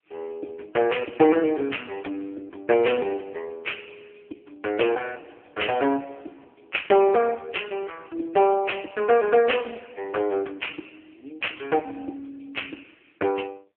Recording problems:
telephone audio; 260 Hz to 3.3 kHz, AMR-NB

